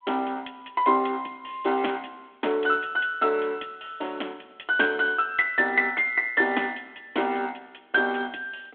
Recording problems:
telephone audio; 260 Hz to 3.4 kHz, G.726

